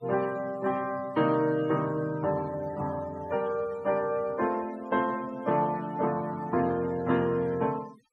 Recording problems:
denoising artefacts; signal-to-artefact ratio 21 dB

